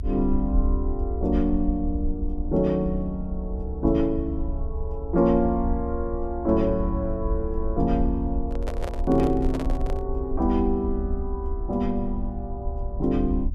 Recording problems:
rumble; below 68 Hz, SNR 5 dB
microphone handling noise; from 8.5 to 10 s; peak -4 dB vs average level

